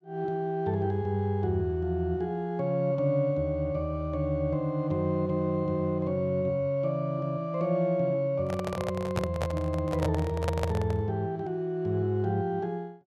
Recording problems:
handling noise; from 8.5 to 11 s; peak +2 dB vs average level

